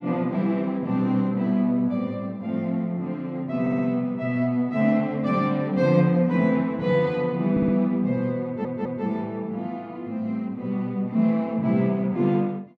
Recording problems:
stutter; at 3.5 s, at 7.5 s and at 8.5 s

